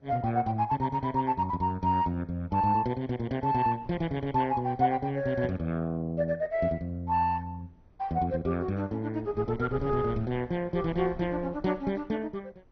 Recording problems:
codec artefacts; MP2, log-spectral distance 2 dB, nothing above 6 kHz
wind on the microphone; below 240 Hz, SNR 17 dB

